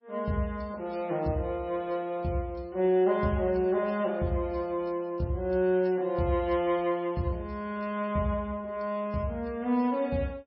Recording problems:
lossy codec; MP3, log-spectral distance 2 dB, nothing above 5.2 kHz

